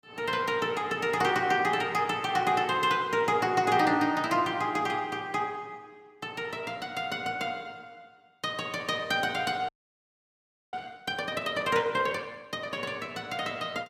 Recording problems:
frozen audio; at 9.5 s for 1 s

